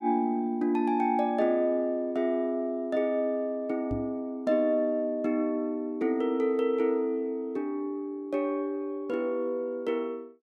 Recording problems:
microphone bump; at 4 s; peak -1 dB vs average level

